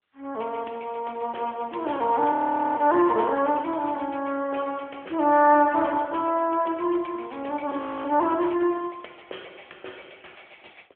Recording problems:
telephone audio; 320 Hz to 3.5 kHz, AMR-NB
audio freezing; at 2.5 s and at 8 s

